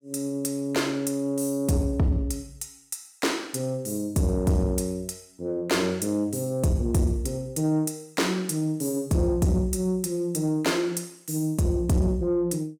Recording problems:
distorted audio; soft clipping, signal-to-distortion ratio 12 dB

